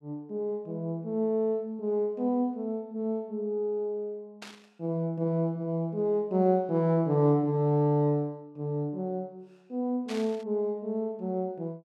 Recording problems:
burst of static; at 4.5 s and at 10 s; peak -8 dB vs average level

